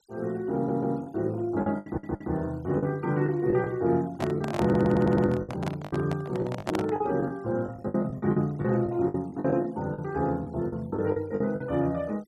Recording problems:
denoising artefacts; signal-to-artefact ratio 27 dB
lost packets; 11% of the sound replaced, filled with the last packet
audio stuttering; at 0.5 s, at 2 s and at 4.5 s
handling noise; from 4 to 7 s; peak +1 dB vs average level

